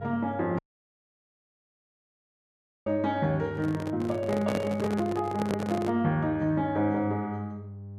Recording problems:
electrical hum; 50 Hz, harmonics up to 600 Hz, SNR 13 dB
audio cutting out; at 0.5 s for 2.5 s
handling noise; from 3.5 to 6 s; peak 0 dB vs average level

